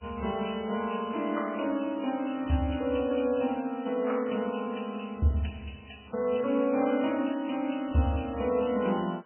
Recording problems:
lossy codec; MP3, log-spectral distance 7 dB, nothing above 2.8 kHz

